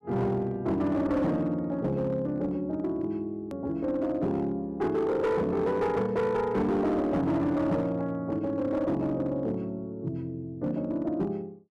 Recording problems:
distortion; hard clipping, uneven, signal-to-distortion ratio 11 dB
edit click; at 3.5 s

